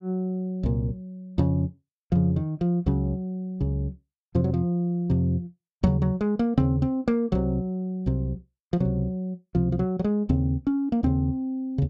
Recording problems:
none

